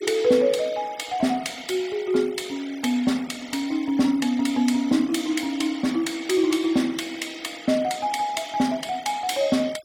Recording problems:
denoising artefacts; signal-to-artefact ratio 20 dB

